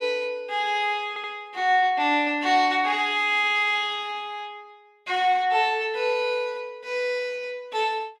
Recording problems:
stutter; at 1 s

